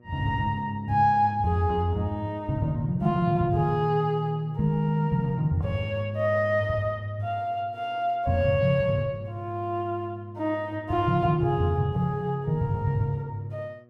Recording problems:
electrical hum; 60 Hz, harmonics up to 1.2 kHz, SNR 26 dB

